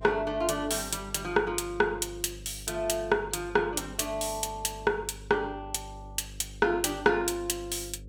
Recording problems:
electrical hum; 50 Hz, harmonics up to 550 Hz, SNR 17 dB

